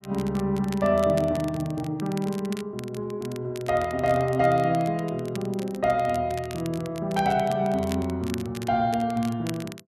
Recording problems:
crackling; vinyl, SNR 18 dB

